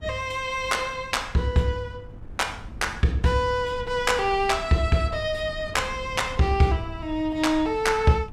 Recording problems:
wind on the microphone; below 150 Hz, SNR 17 dB

